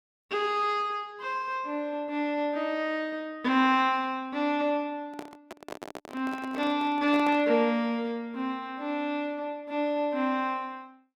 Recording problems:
microphone handling noise; from 5 to 7.5 s; peak -6 dB vs average level

